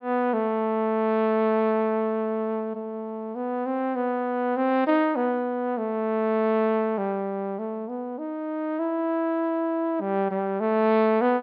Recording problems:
treble missing; nothing above 5.5 kHz

